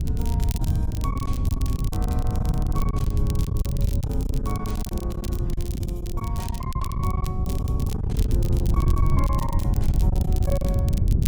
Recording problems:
hum; 50 Hz, harmonics up to 700 Hz, SNR 20 dB
wind on the microphone; below 110 Hz, SNR -9 dB
crackling; vinyl, SNR 8 dB
packet loss; 13% of the sound replaced, filled with silence

